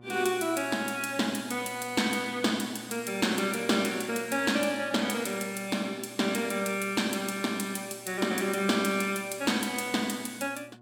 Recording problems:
hum; 60 Hz, harmonics up to 1.4 kHz, SNR 24 dB

